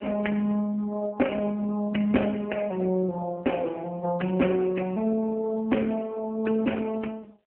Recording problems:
telephone audio; 220 Hz to 3.1 kHz, AMR-NB

